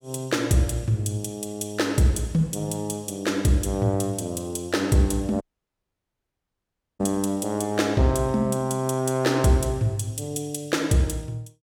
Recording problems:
audio cutting out; at 5.5 s for 1.5 s

